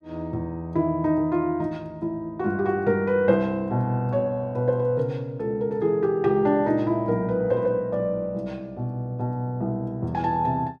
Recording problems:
none

